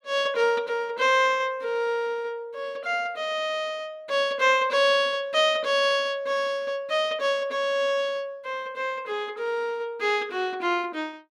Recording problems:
none

